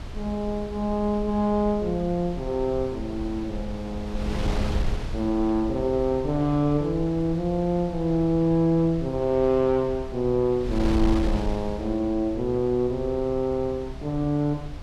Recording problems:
wind noise; below 100 Hz, SNR 10 dB

